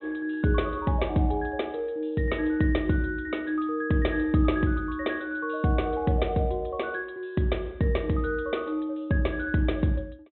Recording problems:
low-pass filter; nothing above 3.9 kHz

